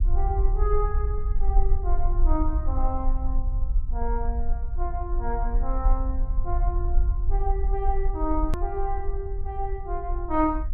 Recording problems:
low-frequency rumble; below 48 Hz, SNR -4 dB
click at an edit; at 8.5 s

